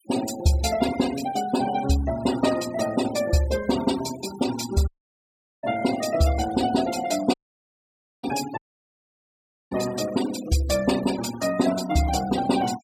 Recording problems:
noise reduction artefacts; signal-to-artefact ratio 12 dB
audio cutting out; at 5 s for 1 s, at 7.5 s for 1 s and at 8.5 s for 1 s

